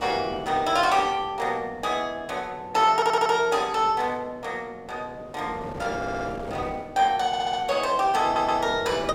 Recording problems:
wind noise; below 660 Hz, SNR 16 dB
audio stuttering; 4 times, first at 3 s

